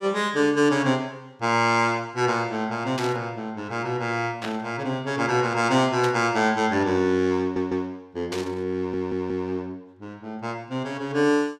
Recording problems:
static burst; 4 times, first at 3 s; peak -4 dB vs average level
audio stuttering; at 7.5 s and at 9 s

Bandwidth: 14.5 kHz